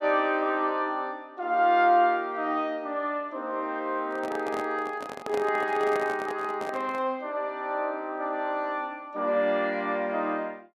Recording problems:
handling noise; from 4 to 7 s; peak -5 dB vs average level

